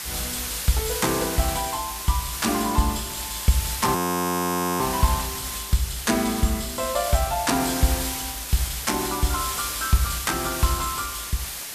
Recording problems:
background hiss; slope +1 dB per octave, SNR 4 dB
audio freezing; at 4 s for 1 s

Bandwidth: 14.5 kHz